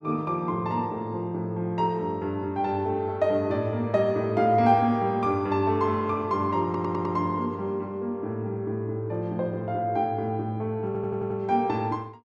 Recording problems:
audio stuttering; at 6.5 s and at 11 s

